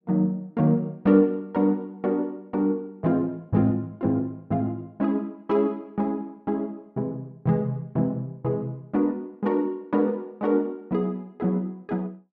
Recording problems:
none

